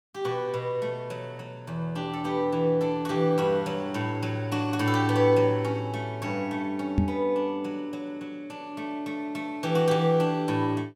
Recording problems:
microphone thump; at 7 s; peak +7 dB vs average level

